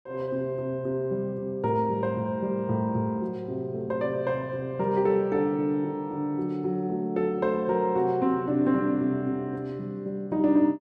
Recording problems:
none

